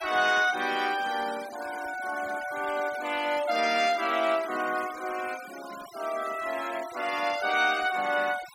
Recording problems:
denoising artefacts; signal-to-artefact ratio 15 dB

